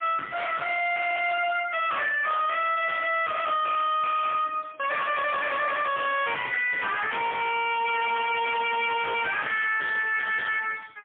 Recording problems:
telephone audio; 190 Hz to 3.5 kHz, AMR-NB, then MP3
distorted audio; hard clipping, signal-to-distortion ratio 6 dB

